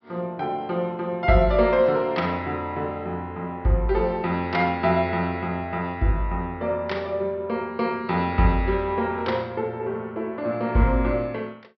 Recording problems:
low-pass filter; nothing above 5.5 kHz

